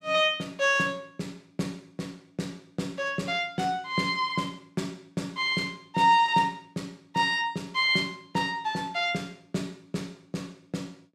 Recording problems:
none

